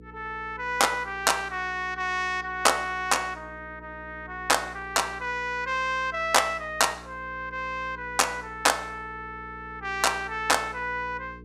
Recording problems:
mains hum; 60 Hz, harmonics up to 480 Hz, SNR 20 dB

